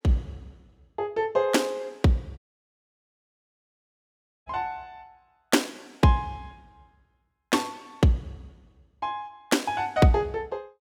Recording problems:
audio cutting out; at 2.5 s for 2 s

